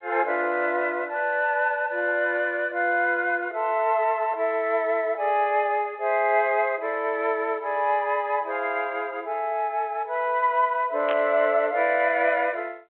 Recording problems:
telephone audio; 300 Hz to 3.3 kHz, G.726
static burst; at 11 s; peak -4 dB vs average level

